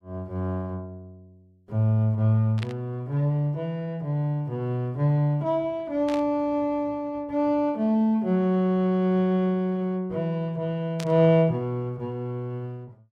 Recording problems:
static burst; at 2.5 s, at 6 s and at 11 s; peak -7 dB vs average level

